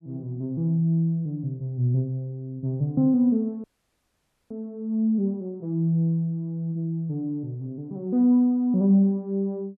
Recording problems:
audio freezing; at 3.5 s for 1 s

